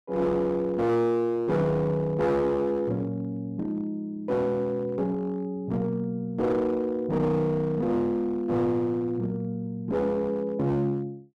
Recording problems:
distorted audio; hard clipping, uneven, signal-to-distortion ratio 11 dB

